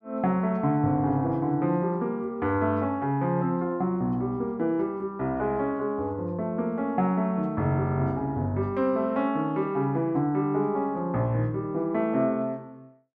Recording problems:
none

